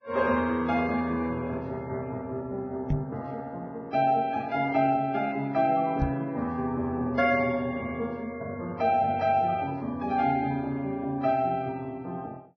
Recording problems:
lossy codec; Vorbis, log-spectral distance 2 dB, nothing above 5.8 kHz
microphone bump; at 3 s and at 6 s; peak +3 dB vs average level

